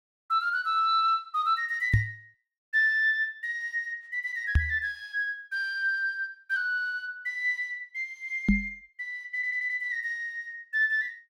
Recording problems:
knock on the microphone; at 2 s, at 4.5 s and at 8.5 s; peak +9 dB vs average level
stutter; at 9.5 s

